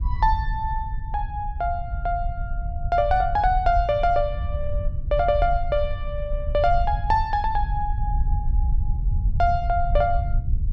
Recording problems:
rumble; below 70 Hz, SNR 4 dB

